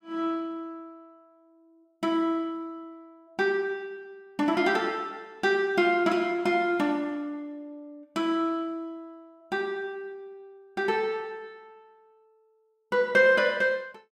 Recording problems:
none

